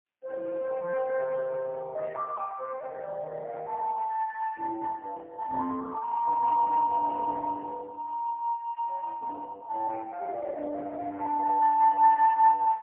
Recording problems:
phone line; 190 Hz to 2.6 kHz, AMR-NB, then MP3

